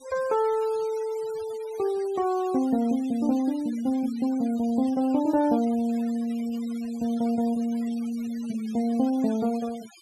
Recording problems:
denoising artefacts; signal-to-artefact ratio 21 dB

